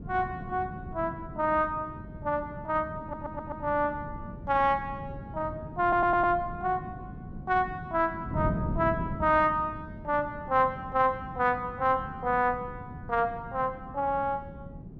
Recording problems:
wind noise; below 220 Hz, SNR 11 dB
audio stuttering; at 3 s and at 6 s

